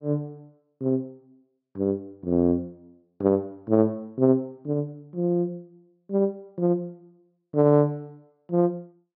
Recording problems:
low-pass filter; nothing above 5.5 kHz

